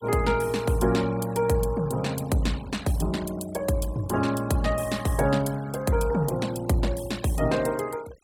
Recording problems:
denoising artefacts; signal-to-artefact ratio 19 dB

